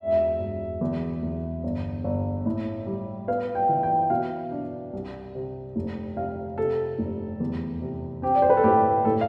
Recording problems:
none

